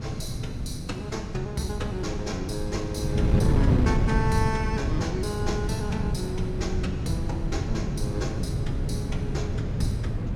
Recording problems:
wind noise; below 170 Hz, SNR -3 dB

